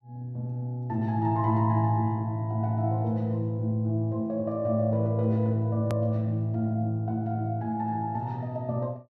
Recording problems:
edit click; at 6 s

